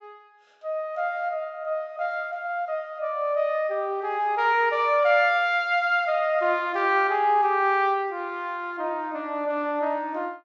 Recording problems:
treble missing; nothing above 7.8 kHz

